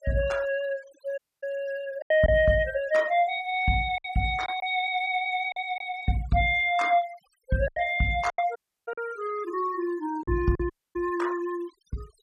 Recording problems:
noise reduction artefacts; signal-to-artefact ratio 22 dB
lost packets; 5% of the sound replaced, filled with silence
dropout; at 1 s, at 8.5 s and at 11 s

